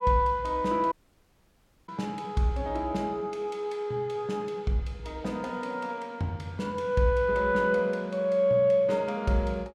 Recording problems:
audio cutting out; at 1 s for 1 s

